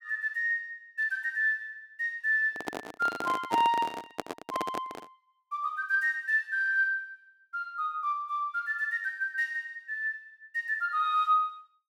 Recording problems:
handling noise; from 2.5 to 5 s; peak +2 dB vs average level

